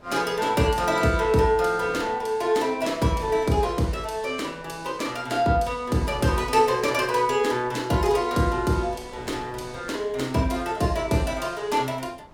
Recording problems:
wind on the microphone; below 850 Hz, SNR 22 dB

